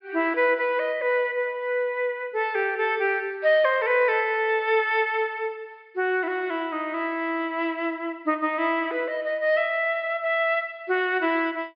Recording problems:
low-pass filter; nothing above 5.1 kHz

